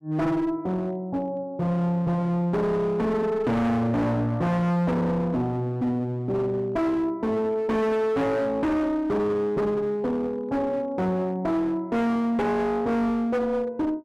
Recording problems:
distorted audio; hard clipping, uneven, signal-to-distortion ratio 6 dB

